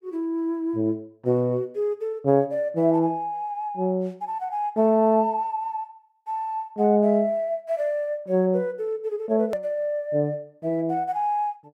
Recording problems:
hard cut with a click; at 9.5 s

